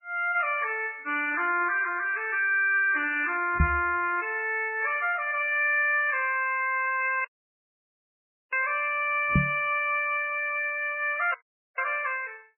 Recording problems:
codec artefacts; MP3, log-spectral distance 2 dB, nothing above 2.4 kHz
knock on the microphone; at 3.5 s and at 9.5 s; peak +6 dB vs average level
audio cutting out; at 7.5 s for 1.5 s and at 11 s

